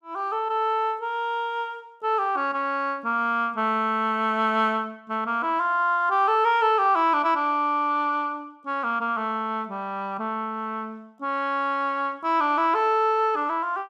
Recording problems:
none

